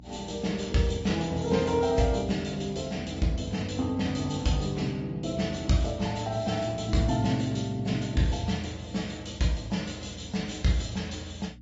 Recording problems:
low-pass filter; nothing above 7.3 kHz
lossy codec; AAC, log-spectral distance 3 dB
electrical hum; 60 Hz, harmonics up to 300 Hz, SNR 20 dB

